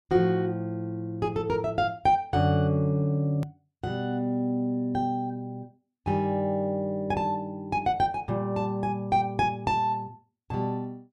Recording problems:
click at an edit; at 3.5 s

